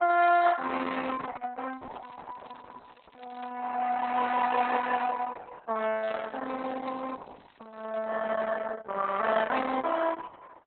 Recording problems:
lossy codec; Opus, then Opus, log-spectral distance 6 dB, nothing above 3.8 kHz
crackling; from 1.5 to 3.5 s and from 6 to 8 s; loose cable, SNR 29 dB

